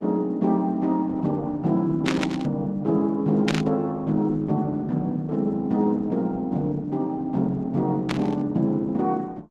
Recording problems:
lossy compression; Opus, log-spectral distance 2 dB
static burst; at 2 s, at 3.5 s and at 8 s; peak +1 dB vs average level

